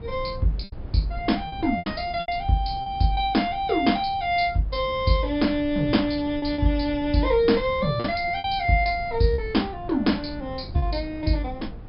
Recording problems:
treble missing; nothing above 5.2 kHz
wind noise; below 150 Hz, SNR 15 dB
packet loss; 6% of the sound replaced, filled with repeated pitch periods

